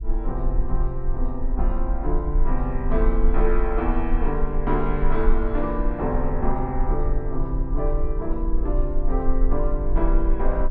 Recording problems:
rumble; below 38 Hz, strongest tone 22 Hz, SNR 0 dB

